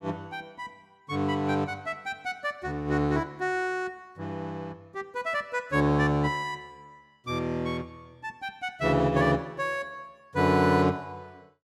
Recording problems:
none

